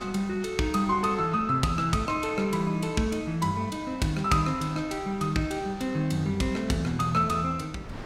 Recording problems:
wind on the microphone; below 580 Hz, SNR 21 dB

